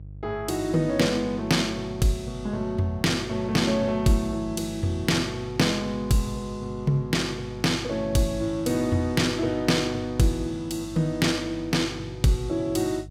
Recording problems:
hum; 50 Hz, harmonics up to 350 Hz, SNR 16 dB

